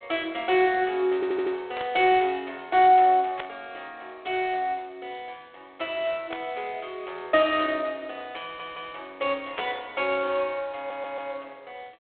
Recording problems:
telephone audio; 320 Hz to 3.7 kHz, G.726
stutter; at 1 s, at 8.5 s and at 11 s
static burst; 4 times, first at 2 s; peak -5 dB vs average level

